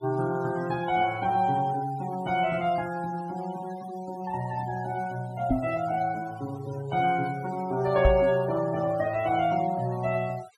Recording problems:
noise reduction artefacts; signal-to-artefact ratio 18 dB
microphone bump; at 5.5 s and at 8 s; peak +7 dB vs average level

